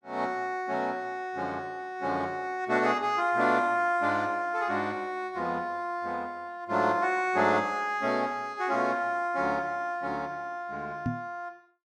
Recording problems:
knock on the microphone; at 11 s; peak +2 dB vs average level

